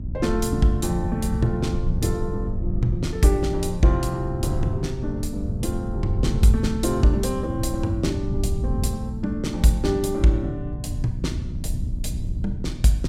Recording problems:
hum; 60 Hz, harmonics up to 600 Hz, SNR 12 dB
wind on the microphone; below 100 Hz, SNR 5 dB

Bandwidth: 16 kHz